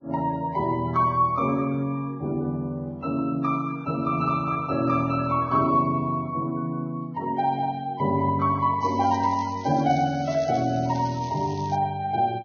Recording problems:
codec artefacts; Vorbis, log-spectral distance 3 dB, nothing above 6 kHz
crackle; from 9 to 12 s; loose cable, SNR 20 dB

